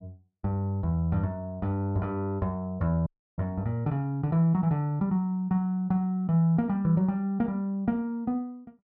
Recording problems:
audio cutting out; at 3 s

